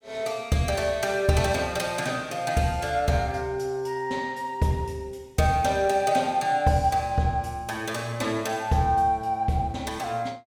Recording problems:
none

